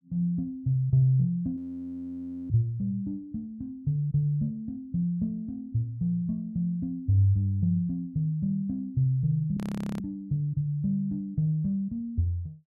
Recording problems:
audio freezing; at 1.5 s for 1 s and at 9.5 s

